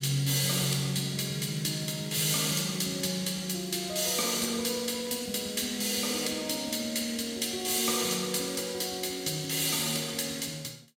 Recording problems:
crackling; from 1.5 to 3 s, at 4 s and from 7 to 9.5 s; loose cable, SNR 25 dB

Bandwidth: 16 kHz